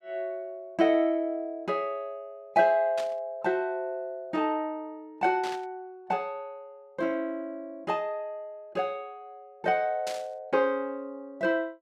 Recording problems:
burst of static; at 3 s, at 5.5 s and at 10 s; peak -4 dB vs average level

